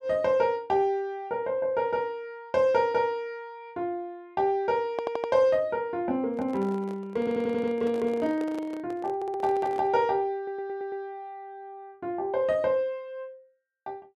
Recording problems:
audio stuttering; 4 times, first at 5 s
handling noise; from 6.5 to 10 s; peak -7 dB vs average level

